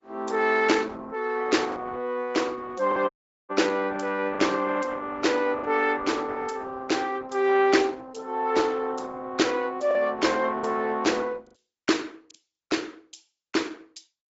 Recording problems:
treble missing; nothing above 7.6 kHz
lossy compression; Opus, log-spectral distance 4 dB
lost packets; 2% of the sound replaced, filled with the last packet
audio cutting out; at 3 s

